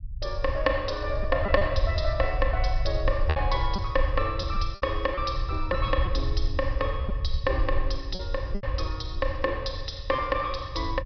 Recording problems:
treble cut off; nothing above 5.5 kHz
low-frequency rumble; below 74 Hz, SNR 2 dB
packet loss; 4% of the sound replaced, filled with repeated pitch periods

